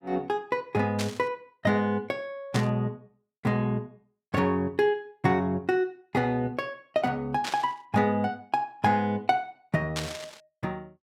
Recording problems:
static burst; 4 times, first at 1 s; peak 0 dB vs average level

